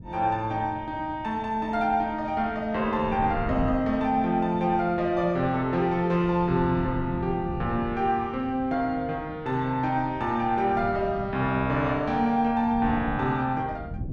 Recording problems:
wind on the microphone; below 200 Hz, SNR 13 dB

